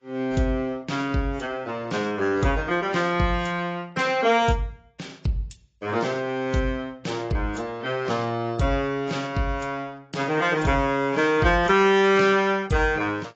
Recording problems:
lossy compression; AAC, log-spectral distance 2 dB, nothing above 7.3 kHz

